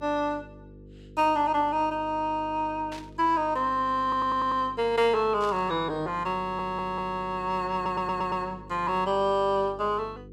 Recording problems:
hum; 50 Hz, harmonics up to 500 Hz, SNR 20 dB
burst of static; at 3 s and at 5.5 s; peak -12 dB vs average level
stutter; at 4 s, at 6.5 s and at 7.5 s

